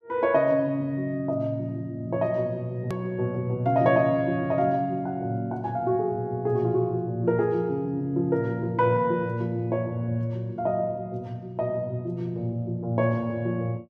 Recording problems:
edit click; at 3 s

